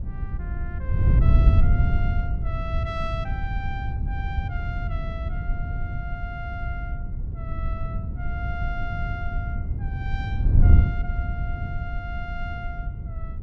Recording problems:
wind noise; below 96 Hz, SNR -10 dB

